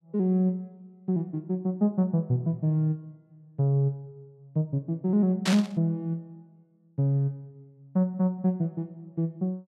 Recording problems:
static burst; at 5.5 s; peak +2 dB vs average level

